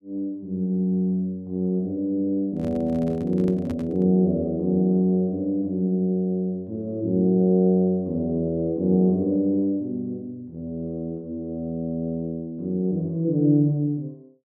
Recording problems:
handling noise; from 2.5 to 4 s; peak -8 dB vs average level

